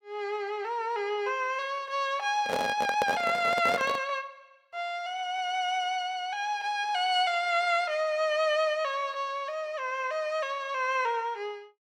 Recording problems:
handling noise; from 2.5 to 4 s; peak +3 dB vs average level

